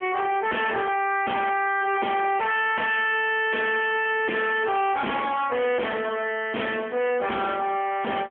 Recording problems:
telephone audio; 300 Hz to 3.3 kHz, AMR-NB
distorted audio; hard clipping, signal-to-distortion ratio 6 dB

